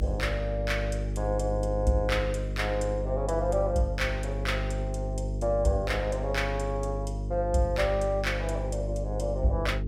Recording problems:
electrical hum; 50 Hz, harmonics up to 450 Hz, SNR 3 dB

